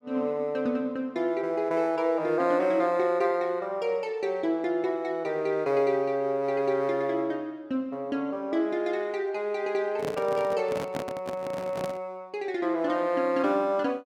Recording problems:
microphone handling noise; from 10 to 12 s; peak -2 dB vs average level

